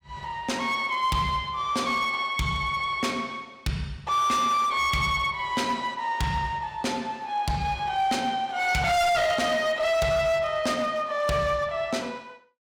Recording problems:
distorted audio; hard clipping, signal-to-distortion ratio 8 dB

